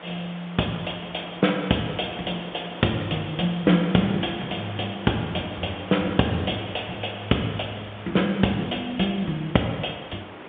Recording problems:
phone line; 190 Hz to 3.8 kHz, G.711
hiss; SNR 15 dB
wind on the microphone; below 700 Hz, SNR 21 dB

